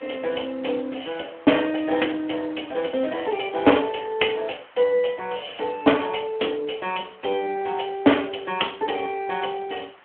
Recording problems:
phone line; 220 Hz to 3.3 kHz, Speex
background hiss; SNR 25 dB

